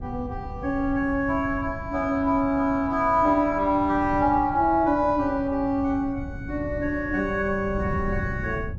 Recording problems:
treble cut off; nothing above 8 kHz
wind noise; below 150 Hz, SNR 12 dB

